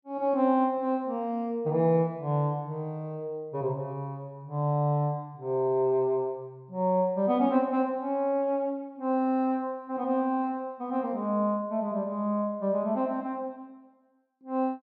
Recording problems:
none

